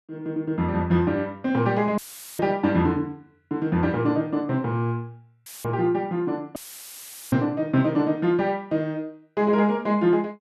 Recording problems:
audio cutting out; at 2 s, at 5.5 s and at 6.5 s for 1 s; filled with static

